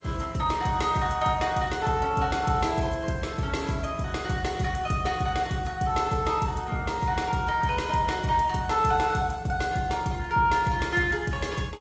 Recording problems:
codec artefacts; G.722, then Opus, log-spectral distance 3 dB

